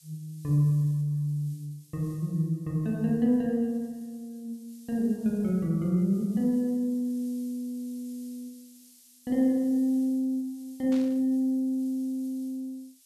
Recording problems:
background hiss; SNR 27 dB
static burst; at 11 s; peak -13 dB vs average level

